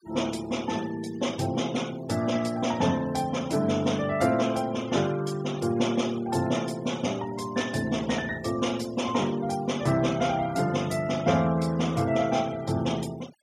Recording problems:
noise reduction artefacts; signal-to-artefact ratio 18 dB

